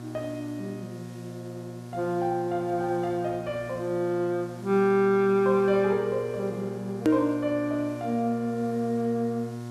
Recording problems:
hum; 60 Hz, harmonics up to 1.4 kHz, SNR 13 dB
hiss; SNR 27 dB
edit click; at 7 s

